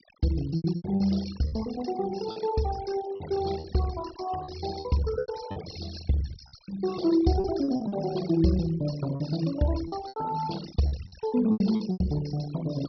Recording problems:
low-pass filter; nothing above 5.5 kHz
noise reduction artefacts; signal-to-artefact ratio 14 dB
packet loss; 10% of the sound replaced, filled with repeated pitch periods

